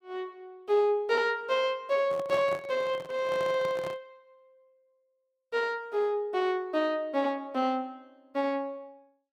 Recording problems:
handling noise; from 2 to 4 s; peak -6 dB vs average level

